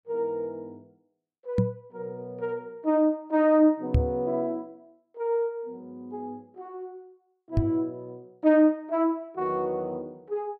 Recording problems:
microphone bump; at 1.5 s, at 4 s and at 7.5 s; peak +7 dB vs average level

